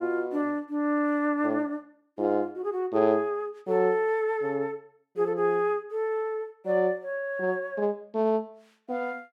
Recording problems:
none

